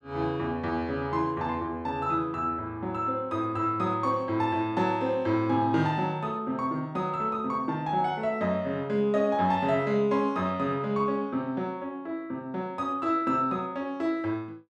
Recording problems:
none

